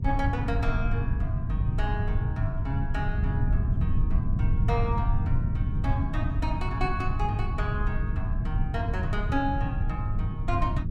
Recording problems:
low-frequency rumble; below 120 Hz, SNR -5 dB

